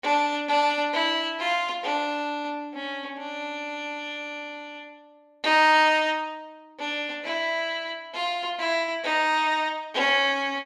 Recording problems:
none

